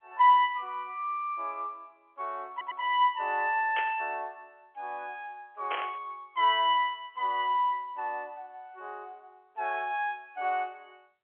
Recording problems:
telephone audio; 320 Hz to 3.3 kHz, G.711
audio stuttering; at 2.5 s
static burst; at 4 s and at 5.5 s; peak -2 dB vs average level

